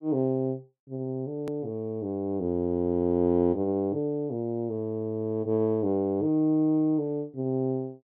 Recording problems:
click at an edit; at 1.5 s

